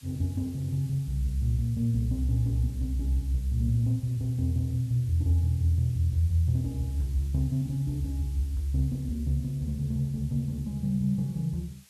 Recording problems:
background hiss; slope +2 dB per octave, SNR 26 dB

